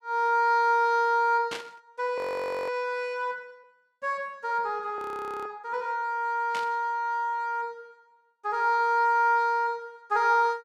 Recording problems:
static burst; at 1.5 s and at 6.5 s; peak -4 dB vs average level
frozen audio; at 2 s for 0.5 s and at 5 s

